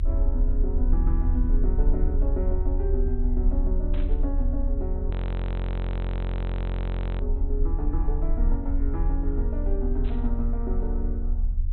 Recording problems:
treble missing; nothing above 4.1 kHz
low-frequency rumble; below 48 Hz, strongest tone 30 Hz, SNR -7 dB
static burst; at 4 s and at 10 s; peak -8 dB vs average level
audio freezing; at 5 s for 2 s

